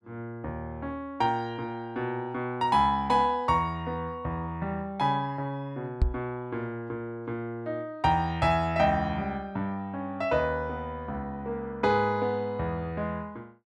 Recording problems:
knock on the microphone; at 6 s; peak +8 dB vs average level

